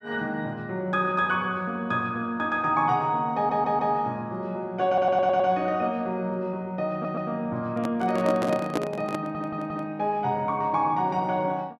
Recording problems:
audio stuttering; 4 times, first at 3.5 s
handling noise; from 7.5 to 10 s; peak +3 dB vs average level

